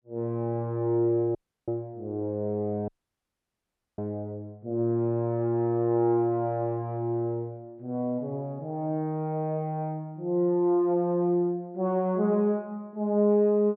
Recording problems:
dropout; at 1.5 s and at 3 s for 1 s

